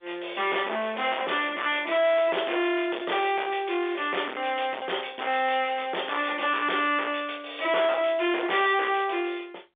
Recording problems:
phone line; 320 Hz to 3.6 kHz, G.711
distorted audio; hard clipping, uneven, signal-to-distortion ratio 6 dB

